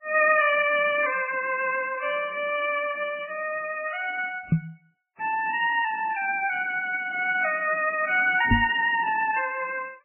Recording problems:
lossy codec; Vorbis, then MP3, log-spectral distance 5 dB, nothing above 2.5 kHz
microphone bump; at 4.5 s and at 8.5 s; peak +6 dB vs average level

